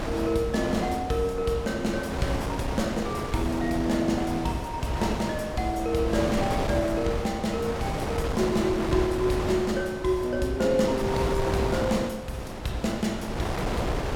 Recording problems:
wind on the microphone; below 920 Hz, SNR 4 dB

